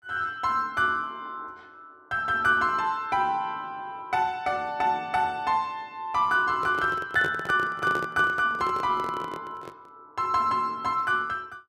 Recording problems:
microphone handling noise; from 6.5 to 10 s; peak -3 dB vs average level

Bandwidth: 15 kHz